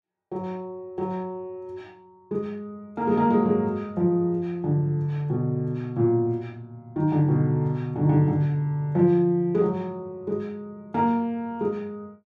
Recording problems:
none

